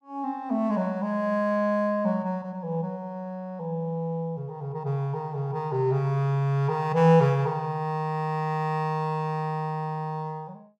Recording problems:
none

